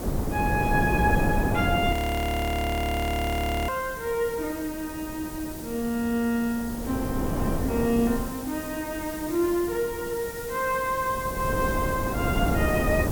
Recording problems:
hiss; slope +2 dB per octave, SNR 12 dB
wind on the microphone; below 410 Hz, SNR 1 dB
frozen audio; at 2 s for 2 s

